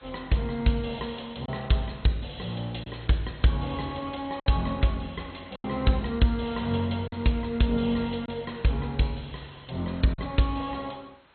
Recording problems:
lossy codec; MP2, log-spectral distance 11 dB, nothing above 4.2 kHz
background hiss; SNR 27 dB
lost packets; 3% of the sound replaced, filled with silence

